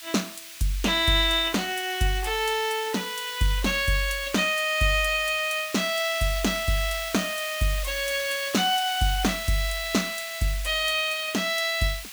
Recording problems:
background hiss; SNR 11 dB

